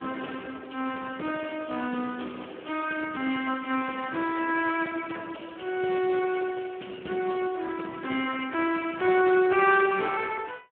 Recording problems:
phone line; 220 Hz to 3.3 kHz, Speex

